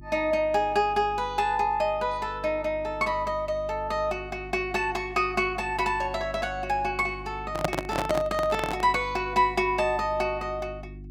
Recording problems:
hum; 50 Hz, harmonics up to 350 Hz, SNR 16 dB
microphone handling noise; from 7.5 to 9 s; peak +5 dB vs average level

